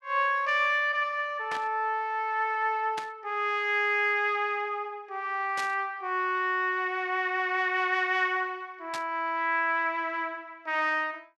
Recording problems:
static burst; 4 times, first at 1.5 s; peak -5 dB vs average level

